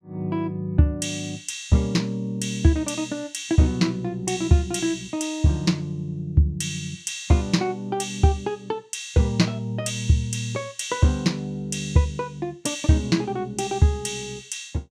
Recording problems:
none

